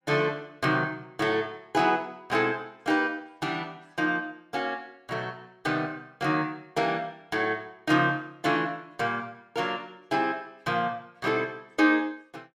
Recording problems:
none

